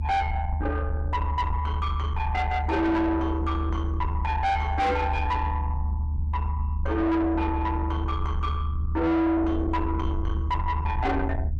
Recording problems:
distortion; soft clipping, signal-to-distortion ratio 8 dB
rumble; below 78 Hz, strongest tone 74 Hz, SNR 2 dB

